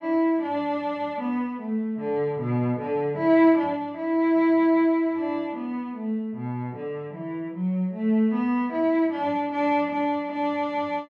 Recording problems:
none

